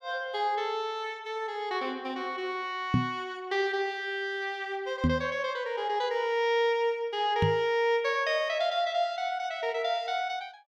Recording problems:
knock on the microphone; at 3 s, at 5 s and at 7.5 s; peak +7 dB vs average level

